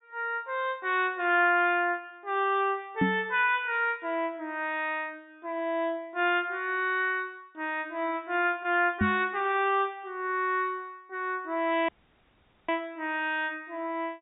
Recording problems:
low-pass filter; nothing above 4 kHz
microphone bump; at 3 s and at 9 s; peak +5 dB vs average level
audio cutting out; at 12 s for 1 s

